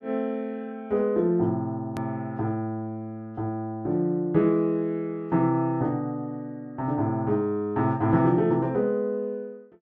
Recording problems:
hard cut with a click; at 2 s

